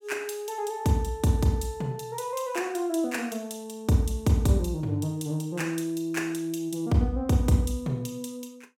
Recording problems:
none

